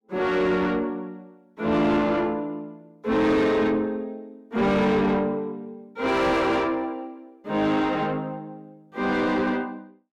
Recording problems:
distorted audio; soft clipping, signal-to-distortion ratio 7 dB

